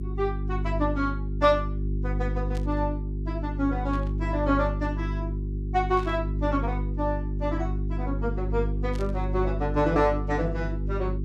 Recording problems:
mains hum; 50 Hz, harmonics up to 400 Hz, SNR 1 dB
static burst; 4 times, first at 2.5 s; peak -12 dB vs average level

